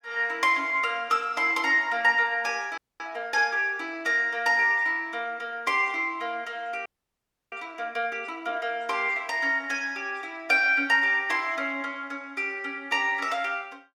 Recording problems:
audio freezing; at 3 s and at 7 s for 0.5 s

